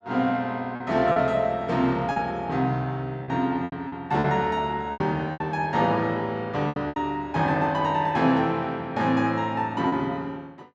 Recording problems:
lost packets; 6% of the sound replaced, filled with repeated pitch periods

